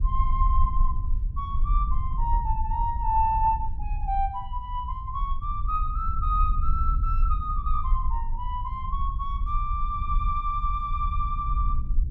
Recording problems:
low-frequency rumble; below 56 Hz, SNR 0 dB

